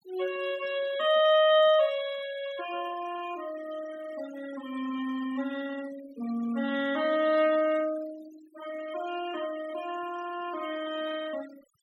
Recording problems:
denoising artefacts; signal-to-artefact ratio 16 dB

